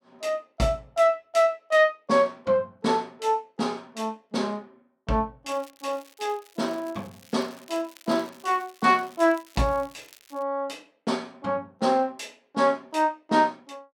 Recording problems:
crackling; from 5.5 to 10 s; loose cable, SNR 25 dB

